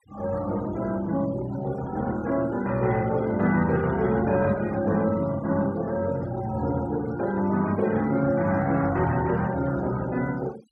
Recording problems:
noise reduction artefacts; signal-to-artefact ratio 20 dB

